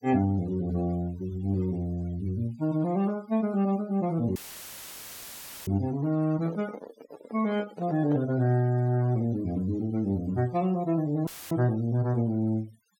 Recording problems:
noise reduction artefacts; signal-to-artefact ratio 22 dB
audio cutting out; at 4.5 s for 1.5 s and at 11 s; filled with static
handling noise; from 6.5 to 8.5 s; peak -6 dB vs average level

